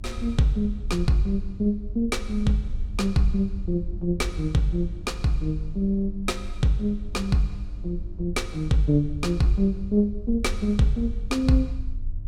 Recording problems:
electrical hum; 50 Hz, harmonics up to 700 Hz, SNR 23 dB
rumble; below 56 Hz, strongest tone 24 Hz, SNR 10 dB

